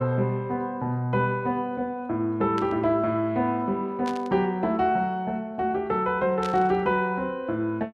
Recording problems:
static burst; at 2.5 s, at 4 s and at 6.5 s; peak -7 dB vs average level

